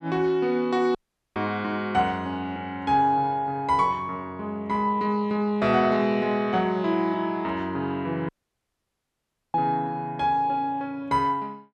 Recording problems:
dropout; at 1 s and at 8.5 s for 1.5 s

